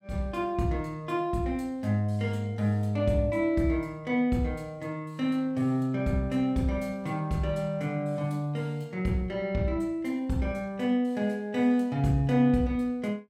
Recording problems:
none

